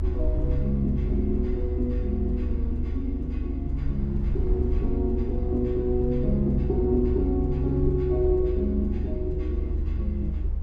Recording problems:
rumble; below 72 Hz, SNR 1 dB

